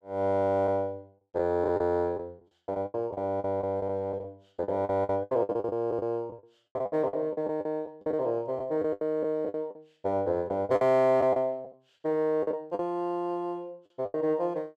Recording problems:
lost packets; 14% of the sound replaced, filled with the last packet

